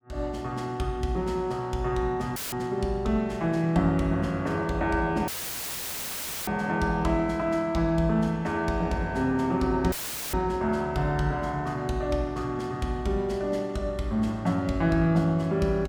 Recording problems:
audio cutting out; at 2.5 s, at 5.5 s for 1 s and at 10 s; filled with static

